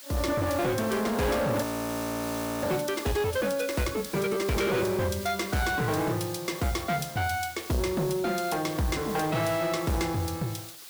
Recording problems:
distortion; soft clipping, signal-to-distortion ratio 8 dB
hiss; slope +2 dB per octave, SNR 12 dB
audio freezing; at 1.5 s for 1 s

